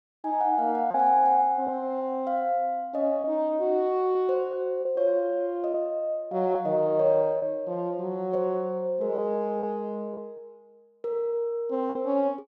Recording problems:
lost packets; 3% of the sound replaced, filled with repeated pitch periods

